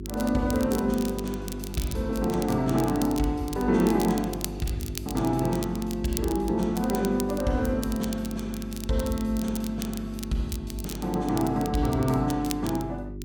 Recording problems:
hum; 50 Hz, harmonics up to 400 Hz, SNR 10 dB
crackle; vinyl, SNR 13 dB

